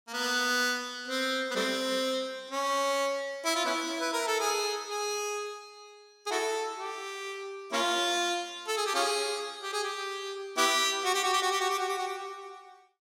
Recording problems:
none

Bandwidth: 16.5 kHz